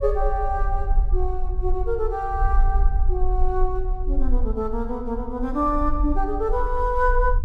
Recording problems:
low-frequency rumble; below 48 Hz, strongest tone 18 Hz, SNR 1 dB

